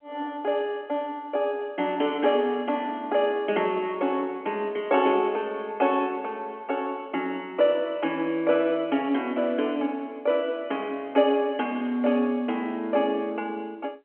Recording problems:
phone line; 220 Hz to 3.2 kHz, G.711

